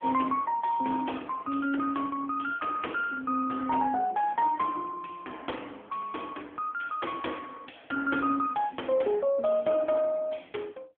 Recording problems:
telephone audio; 220 Hz to 3.3 kHz, AMR-NB

